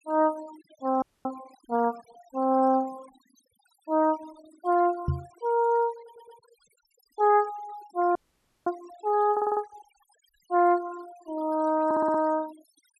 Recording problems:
noise reduction artefacts; signal-to-artefact ratio 24 dB
audio freezing; at 1 s and at 8 s for 0.5 s
knock on the microphone; at 5 s; peak +3 dB vs average level
audio stuttering; at 6 s, at 9.5 s and at 12 s

